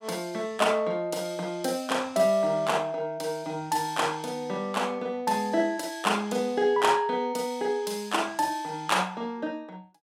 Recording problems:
none

